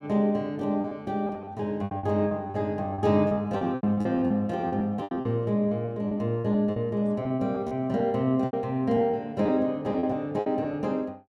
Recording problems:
lost packets; 14% of the sound replaced, filled with repeated pitch periods

